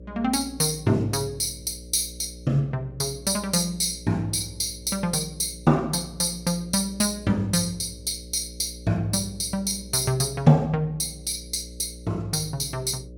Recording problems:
electrical hum; 60 Hz, harmonics up to 600 Hz, SNR 18 dB

